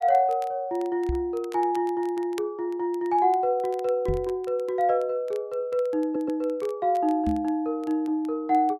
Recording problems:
crackle; vinyl, SNR 27 dB
knock on the microphone; at 1 s, at 4 s and at 7.5 s; peak 0 dB vs average level
audio stuttering; at 6 s

